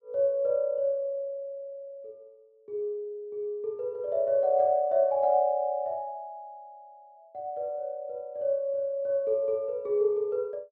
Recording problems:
none

